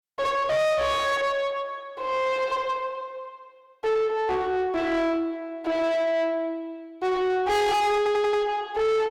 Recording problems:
distorted audio; soft clipping, signal-to-distortion ratio 6 dB
stutter; at 8 s

